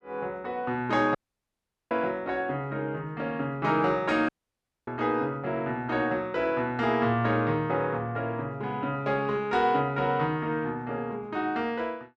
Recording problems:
audio cutting out; at 1 s for 1 s and at 4.5 s for 0.5 s

